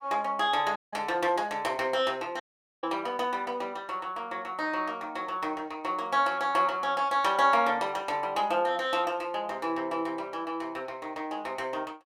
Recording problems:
audio cutting out; at 1 s and at 2.5 s

